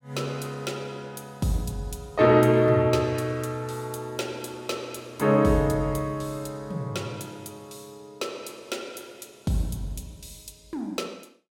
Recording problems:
none

